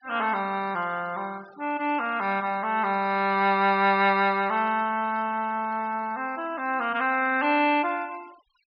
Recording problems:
treble cut off; nothing above 5.5 kHz
denoising artefacts; signal-to-artefact ratio 24 dB

